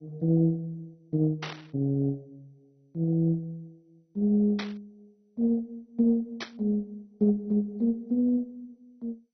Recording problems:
codec artefacts; MP2, log-spectral distance 2 dB, nothing above 11.6 kHz
burst of static; at 1.5 s, at 4.5 s and at 6.5 s; peak -3 dB vs average level

